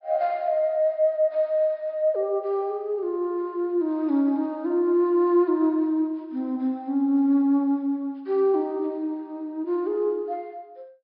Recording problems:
treble cut off; nothing above 5.5 kHz

